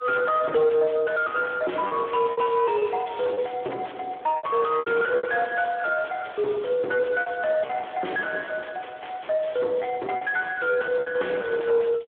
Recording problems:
telephone audio; 300 Hz to 3.4 kHz, Speex
distorted audio; soft clipping, signal-to-distortion ratio 6 dB
lost packets; 6% of the sound replaced, filled with repeated pitch periods
crackle; from 1 to 5.5 s, at 6 s and from 7.5 to 9.5 s; loose cable, SNR 26 dB

